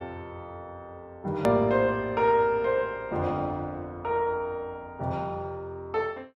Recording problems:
click at an edit; at 1.5 s

